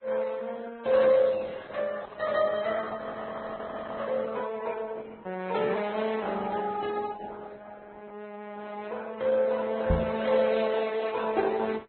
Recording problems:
lossy compression; Opus, then Vorbis, log-spectral distance 4 dB, nothing above 4.1 kHz
audio freezing; at 3 s for 1 s
knock on the microphone; at 10 s; peak +5 dB vs average level

